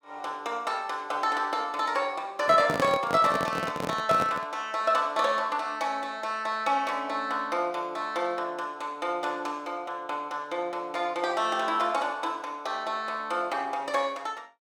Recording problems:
handling noise; from 2.5 to 4.5 s; peak +3 dB vs average level

